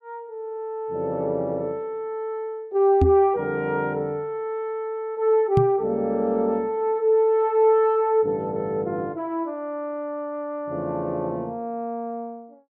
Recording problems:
knock on the microphone; at 3 s and at 5.5 s; peak +7 dB vs average level

